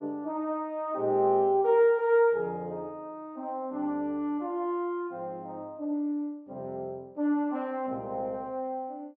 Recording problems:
none

